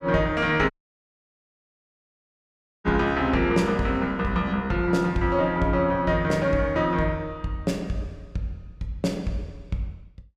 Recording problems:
dropout; at 0.5 s for 2 s

